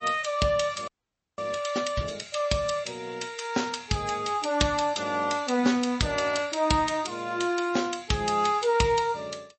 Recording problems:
lossy codec; MP3, log-spectral distance 4 dB, nothing above 8.2 kHz
frozen audio; at 1 s

